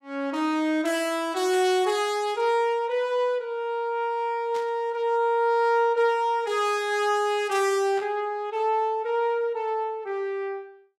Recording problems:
burst of static; at 1.5 s, at 4.5 s and at 8 s; peak -12 dB vs average level

